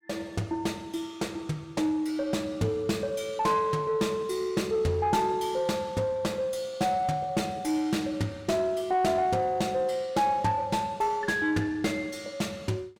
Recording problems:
distorted audio; soft clipping, signal-to-distortion ratio 11 dB

